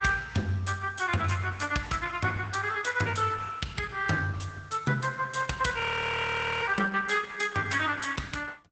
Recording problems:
lossy codec; Opus, log-spectral distance 5 dB, nothing above 8 kHz
audio freezing; at 6 s for 1 s

